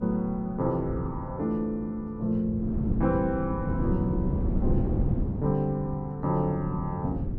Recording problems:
wind on the microphone; below 210 Hz, SNR 2 dB

